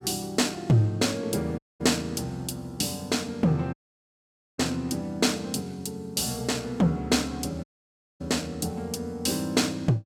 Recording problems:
dropout; at 1.5 s, at 3.5 s for 1 s and at 7.5 s for 0.5 s

